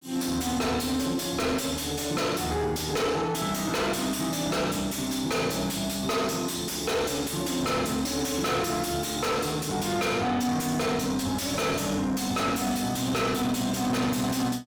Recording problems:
distorted audio; soft clipping, signal-to-distortion ratio 6 dB

